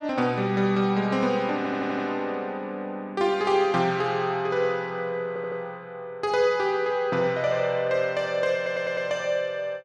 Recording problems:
audio stuttering; at 1.5 s, at 5.5 s and at 8.5 s

